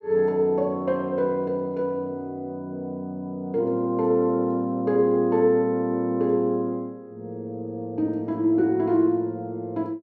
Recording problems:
none

